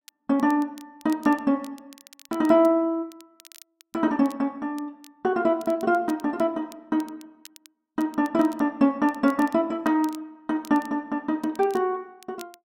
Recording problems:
crackle; vinyl, SNR 26 dB

